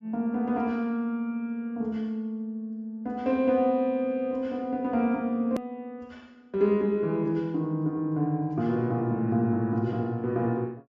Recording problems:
low-pass filter; nothing above 8 kHz
edit click; at 5.5 s

